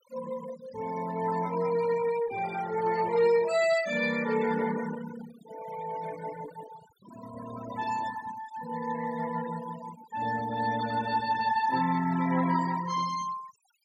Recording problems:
noise reduction artefacts; signal-to-artefact ratio 13 dB

